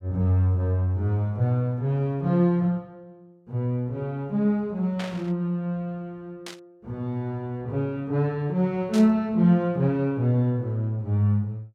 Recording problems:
burst of static; at 5 s, at 6.5 s and at 9 s; peak -7 dB vs average level

